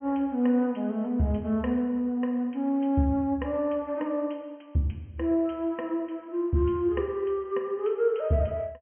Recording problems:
treble missing; nothing above 3.2 kHz

